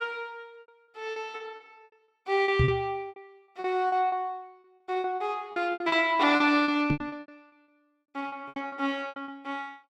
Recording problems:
packet loss; 17% of the sound replaced, filled with repeated pitch periods
microphone bump; at 2.5 s and at 7 s; peak +6 dB vs average level

